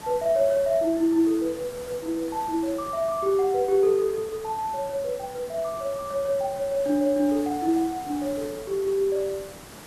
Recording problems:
background hiss; slope -4 dB per octave, SNR 17 dB

